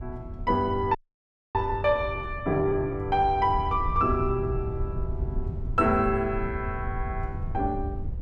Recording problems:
rumble; below 100 Hz, SNR 8 dB
audio freezing; at 1 s for 0.5 s

